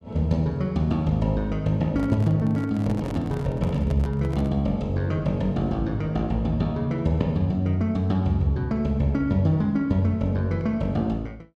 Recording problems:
microphone handling noise; from 2 to 4.5 s; peak -9 dB vs average level

